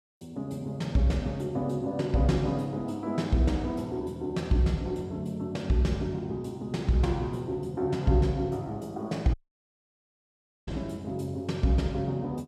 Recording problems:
dropout; at 9.5 s for 1.5 s

